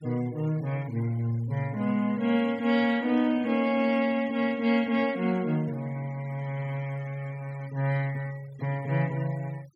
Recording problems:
noise reduction artefacts; signal-to-artefact ratio 23 dB

